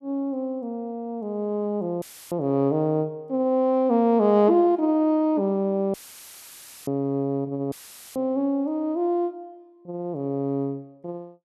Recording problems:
dropout; at 2 s, at 6 s for 1 s and at 7.5 s; filled with static

